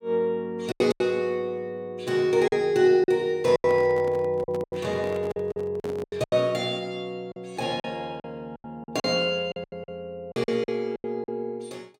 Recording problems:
lost packets; 12% of the sound replaced, filled with silence
microphone handling noise; from 3.5 to 6.5 s; peak -8 dB vs average level

